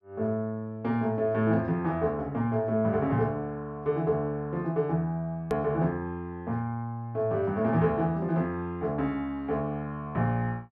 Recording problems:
hard cut with a click; at 5.5 s

